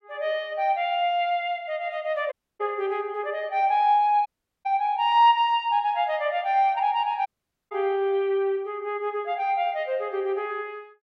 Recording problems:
dropout; at 2.5 s, at 4.5 s and at 7.5 s

